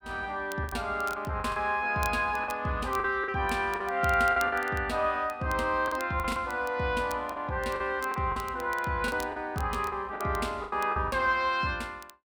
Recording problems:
crackle; vinyl, SNR 20 dB
packet loss; 9% of the sound replaced, filled with the last packet

